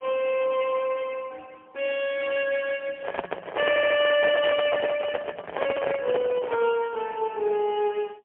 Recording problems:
telephone audio; 260 Hz to 3.3 kHz, AMR-NB, then MP3
microphone handling noise; from 3 to 6.5 s; peak +1 dB vs average level
audio stuttering; at 3.5 s

